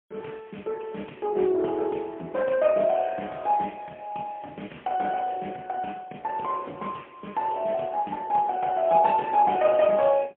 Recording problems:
phone line; 220 Hz to 3.4 kHz, AMR-NB, then MP3

